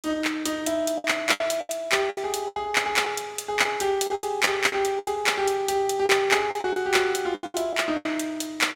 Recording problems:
lost packets; 12% of the sound replaced, filled with the last packet

